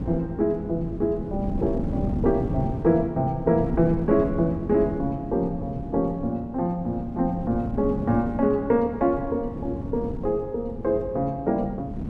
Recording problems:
wind on the microphone; below 260 Hz, SNR 8 dB

